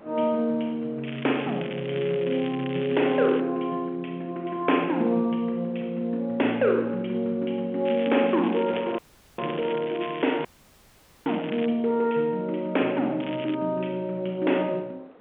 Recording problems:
phone line; 280 Hz to 3.3 kHz, G.711
wind on the microphone; below 830 Hz, SNR 22 dB
crackling; from 1 to 3.5 s, from 8 to 12 s and at 13 s; loose cable, SNR 15 dB
audio cutting out; at 9 s and at 10 s for 1 s

